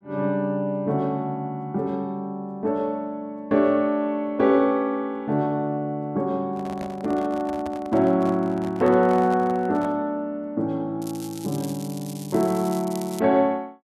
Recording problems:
microphone handling noise; from 6.5 to 10 s; peak -8 dB vs average level
crackle; from 11 to 13 s; loose cable, SNR 17 dB

